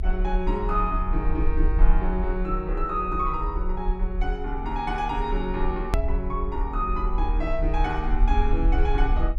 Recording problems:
low-frequency rumble; below 46 Hz, strongest tone 34 Hz, SNR 0 dB
edit click; at 6 s

